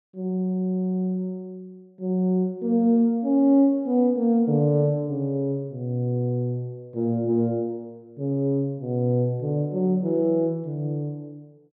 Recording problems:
none

